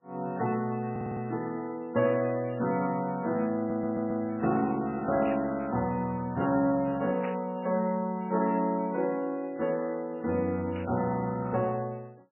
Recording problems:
lossy codec; MP3, log-spectral distance 2 dB, nothing above 2.6 kHz
audio stuttering; at 1 s and at 3.5 s
burst of static; at 5.5 s, at 7 s and at 11 s; peak -9 dB vs average level

